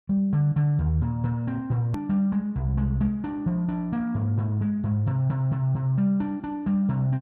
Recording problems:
edit click; at 2 s

